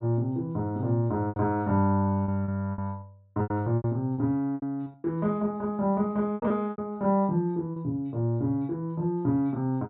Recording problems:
treble cut off; nothing above 4.1 kHz
lost packets; 8% of the sound replaced, filled with repeated pitch periods

